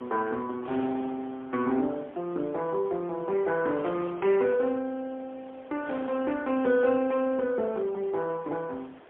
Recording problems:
phone line; 220 Hz to 2.6 kHz, AMR-NB, then MP3
wind noise; below 1.5 kHz, SNR 19 dB

